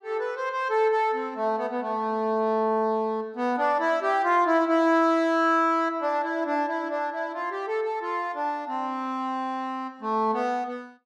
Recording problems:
none

